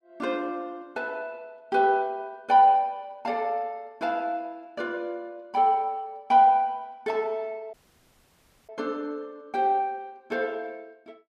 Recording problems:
dropout; at 7.5 s for 1 s

